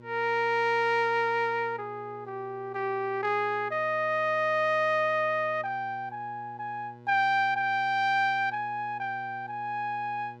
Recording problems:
hum; 60 Hz, harmonics up to 1.6 kHz, SNR 22 dB

